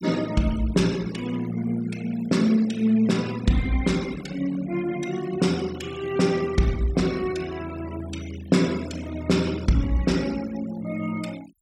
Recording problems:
denoising artefacts; signal-to-artefact ratio 18 dB

